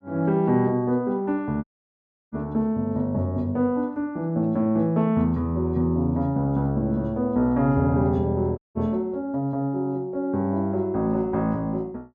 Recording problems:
audio cutting out; at 1.5 s for 0.5 s and at 8.5 s

